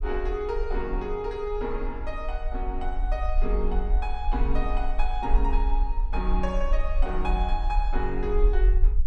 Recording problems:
rumble; below 42 Hz, SNR -2 dB

